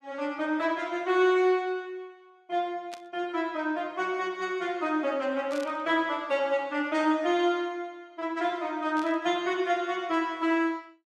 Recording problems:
static burst; at 3 s, at 5.5 s and at 9 s; peak -11 dB vs average level

